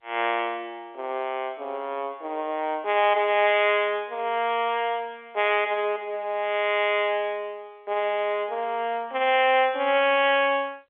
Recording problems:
phone line; 300 Hz to 3.5 kHz, G.711

